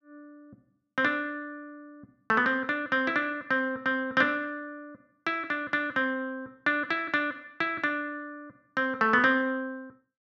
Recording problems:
none

